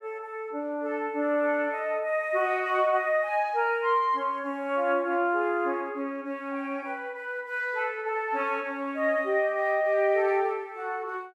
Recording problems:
none

